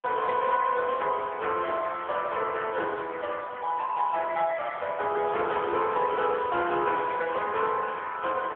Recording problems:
telephone audio; 300 Hz to 3.4 kHz, AMR-NB

